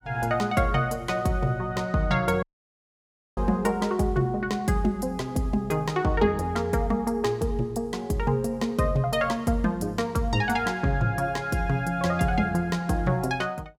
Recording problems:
audio cutting out; at 2.5 s for 1 s

